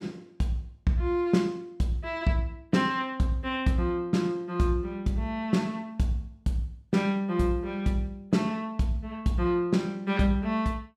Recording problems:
none

